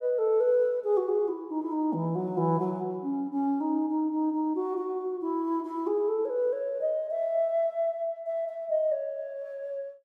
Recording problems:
none

